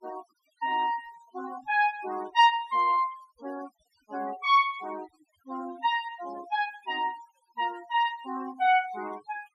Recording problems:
denoising artefacts; signal-to-artefact ratio 20 dB

